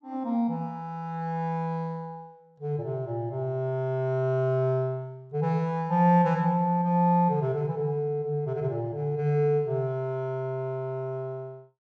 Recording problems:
none

